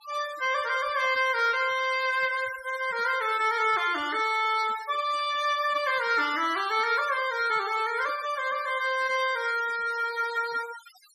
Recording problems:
noise reduction artefacts; signal-to-artefact ratio 15 dB

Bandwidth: 14.5 kHz